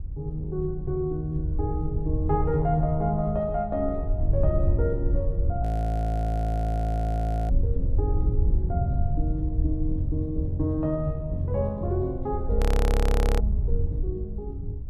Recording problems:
wind noise; below 80 Hz, SNR 0 dB
audio freezing; at 5.5 s for 2 s and at 13 s for 1 s

